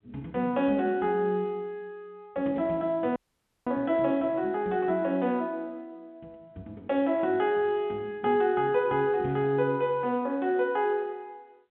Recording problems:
phone line; 190 Hz to 3.7 kHz, G.711
audio cutting out; at 3 s for 0.5 s

